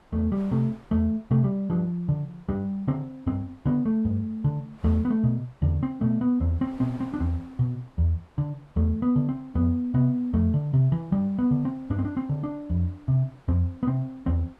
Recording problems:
wind on the microphone; below 1.1 kHz, SNR 27 dB

